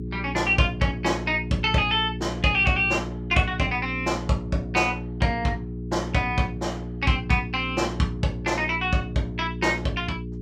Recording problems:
electrical hum; 60 Hz, harmonics up to 420 Hz, SNR 9 dB

